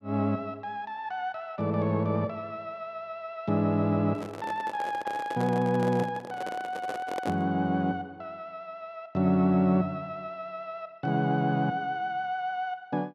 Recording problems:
handling noise; from 4 to 7.5 s; peak -1 dB vs average level

